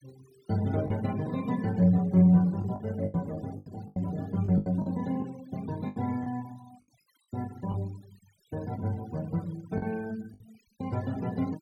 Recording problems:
noise reduction artefacts; signal-to-artefact ratio 23 dB
lost packets; 7% of the sound replaced, filled with the last packet

